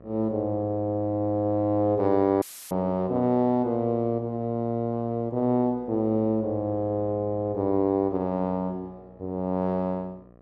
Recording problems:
electrical hum; 60 Hz, harmonics up to 1.4 kHz, SNR 26 dB
dropout; at 2.5 s; filled with static

